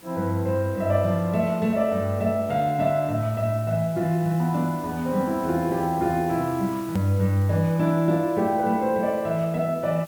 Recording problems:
hiss; slope -2 dB per octave, SNR 22 dB
hard cut with a click; at 7 s

